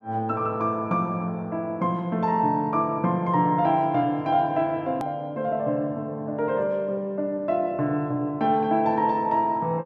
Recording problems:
hard cut with a click; at 5 s

